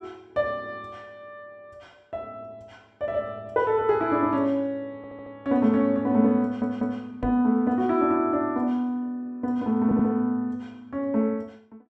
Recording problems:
stutter; at 5 s, at 6.5 s and at 10 s
knock on the microphone; at 7 s; peak -3 dB vs average level

